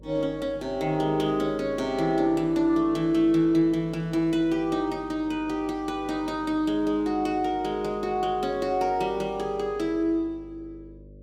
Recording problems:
hum; 50 Hz, harmonics up to 600 Hz, SNR 22 dB

